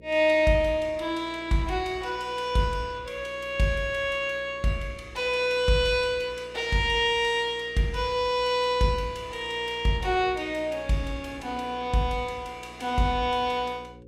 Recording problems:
electrical hum; 60 Hz, harmonics up to 540 Hz, SNR 23 dB

